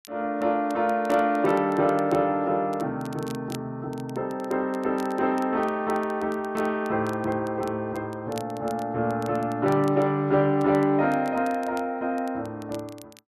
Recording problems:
crackling; vinyl, SNR 24 dB

